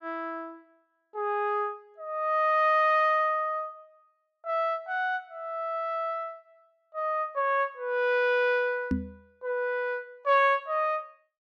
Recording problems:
microphone bump; at 9 s; peak +3 dB vs average level

